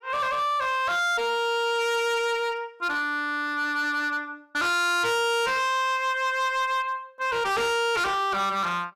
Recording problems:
distorted audio; hard clipping, signal-to-distortion ratio 7 dB

